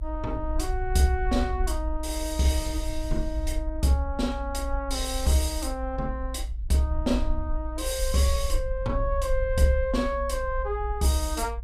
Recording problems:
rumble; below 56 Hz, SNR 5 dB

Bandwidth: 15.5 kHz